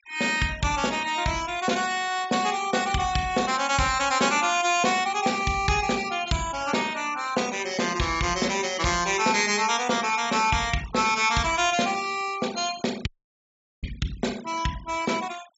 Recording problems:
treble missing; nothing above 8 kHz
denoising artefacts; signal-to-artefact ratio 17 dB
audio cutting out; at 13 s for 1 s

